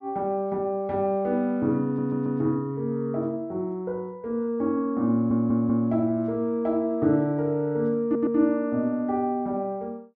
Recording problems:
audio stuttering; at 2 s, at 5 s and at 8 s

